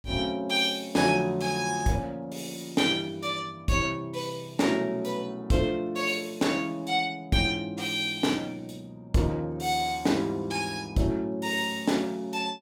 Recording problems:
none

